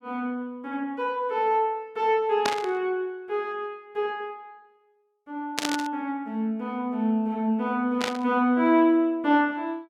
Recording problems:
static burst; at 2.5 s, at 5.5 s and at 8 s; peak +3 dB vs average level

